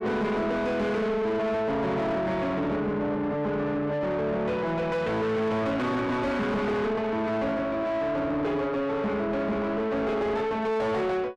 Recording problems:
distorted audio; soft clipping, signal-to-distortion ratio 7 dB

